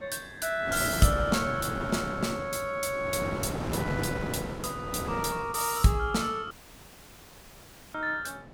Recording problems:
wind noise; below 680 Hz, SNR 6 dB
dropout; at 6.5 s for 1.5 s

